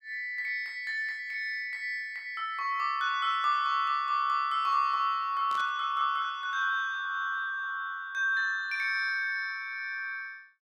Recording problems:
burst of static; at 5.5 s; peak -13 dB vs average level

